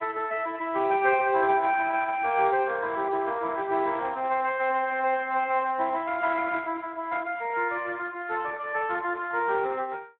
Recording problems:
phone line; 280 Hz to 3.5 kHz, Speex

